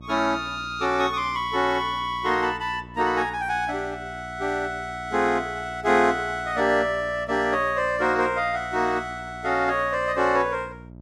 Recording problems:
hum; 60 Hz, harmonics up to 720 Hz, SNR 19 dB

